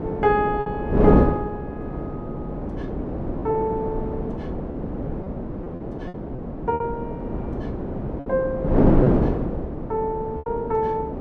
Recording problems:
wind on the microphone; below 430 Hz, SNR -1 dB
packet loss; 4% of the sound replaced, filled with repeated pitch periods

